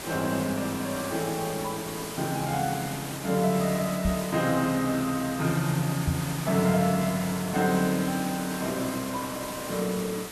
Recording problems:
background hiss; slope -3 dB per octave, SNR 8 dB
knock on the microphone; at 4 s and at 6 s; peak +3 dB vs average level

